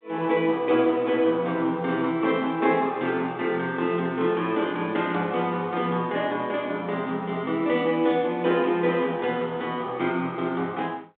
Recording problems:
telephone audio; 190 Hz to 3.7 kHz, G.726

